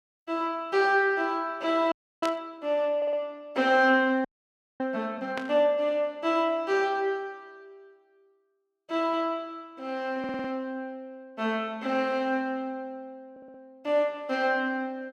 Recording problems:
audio freezing; at 2 s and at 4.5 s for 0.5 s
static burst; at 2 s and at 5.5 s; peak -4 dB vs average level
stutter; at 3 s, at 10 s and at 13 s

